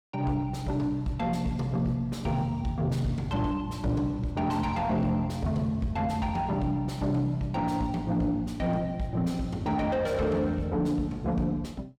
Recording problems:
distorted audio; soft clipping, signal-to-distortion ratio 9 dB

